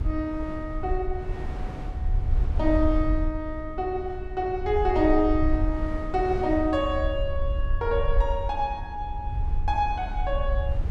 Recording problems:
electrical hum; 60 Hz, harmonics up to 420 Hz, SNR 21 dB
low-frequency rumble; below 66 Hz, SNR 4 dB
wind on the microphone; below 490 Hz, SNR 15 dB

